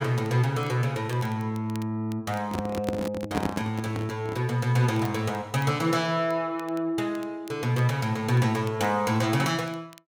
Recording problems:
crackling; vinyl, SNR 25 dB
handling noise; from 2.5 to 4.5 s; peak +3 dB vs average level

